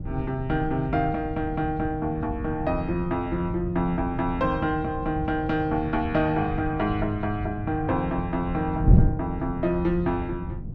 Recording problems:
wind noise; below 160 Hz, SNR 5 dB

